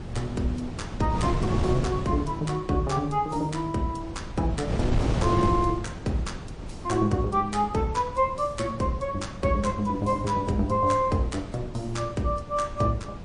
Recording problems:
codec artefacts; MP3, log-spectral distance 2 dB, nothing above 8.2 kHz
wind noise; below 300 Hz, SNR 7 dB

